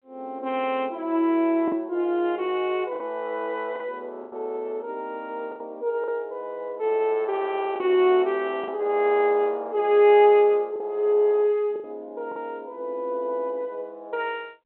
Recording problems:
phone line; 220 Hz to 3.3 kHz, G.726
lost packets; 4% of the sound replaced, filled with the last packet

